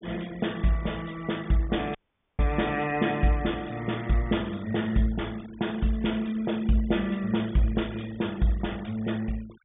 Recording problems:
treble missing; nothing above 3.6 kHz
noise reduction artefacts; signal-to-artefact ratio 21 dB
audio cutting out; at 2 s

